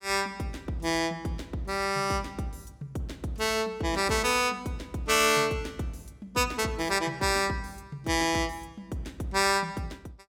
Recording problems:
none

